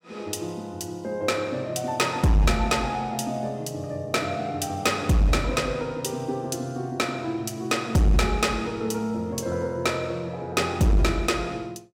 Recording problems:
distorted audio; hard clipping, signal-to-distortion ratio 11 dB

